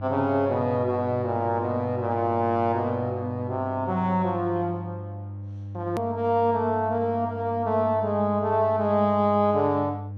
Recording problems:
hum; 50 Hz, harmonics up to 500 Hz, SNR 11 dB
edit click; at 6 s

